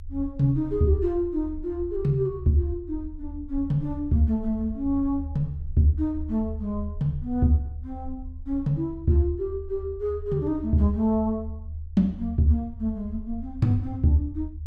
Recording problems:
rumble; below 78 Hz, SNR 12 dB

